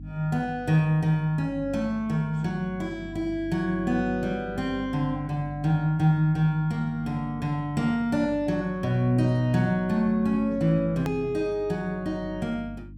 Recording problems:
electrical hum; 50 Hz, harmonics up to 300 Hz, SNR 17 dB
click at an edit; at 11 s

